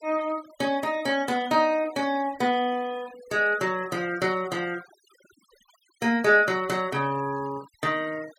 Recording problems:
noise reduction artefacts; signal-to-artefact ratio 22 dB

